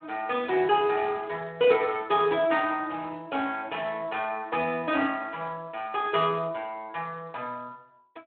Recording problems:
telephone audio; 190 Hz to 3.7 kHz, Speex

